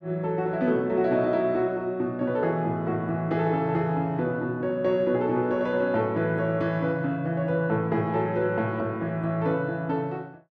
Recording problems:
none

